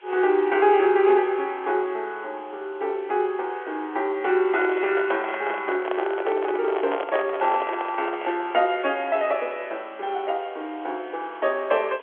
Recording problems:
telephone audio; 300 Hz to 3.4 kHz, G.711
hiss; SNR 27 dB
handling noise; from 4.5 to 8.5 s; peak 0 dB vs average level

